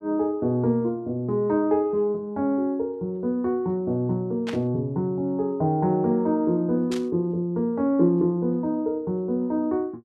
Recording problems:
burst of static; at 4.5 s and at 7 s; peak -6 dB vs average level

